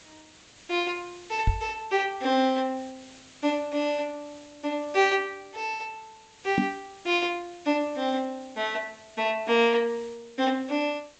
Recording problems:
treble cut off; nothing above 8 kHz
background hiss; slope -1 dB per octave, SNR 23 dB
knock on the microphone; at 1.5 s and at 6.5 s; peak +6 dB vs average level

